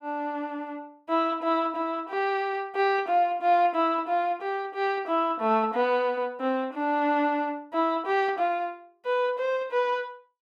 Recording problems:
none

